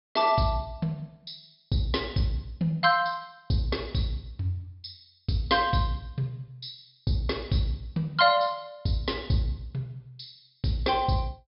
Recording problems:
treble missing; nothing above 5.3 kHz

